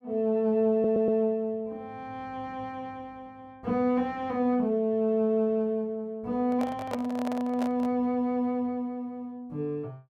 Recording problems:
stutter; at 0.5 s
handling noise; from 6.5 to 8 s; peak -2 dB vs average level

